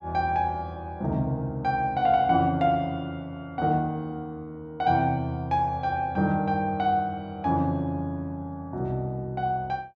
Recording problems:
none

